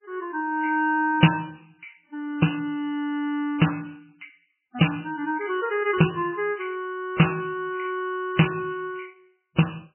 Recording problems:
lossy codec; MP3, log-spectral distance 7 dB, nothing above 3 kHz

